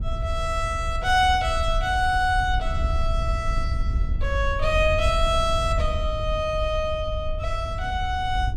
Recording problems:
wind noise; below 74 Hz, SNR 4 dB

